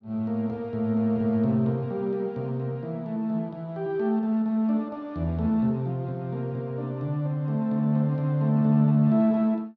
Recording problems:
none

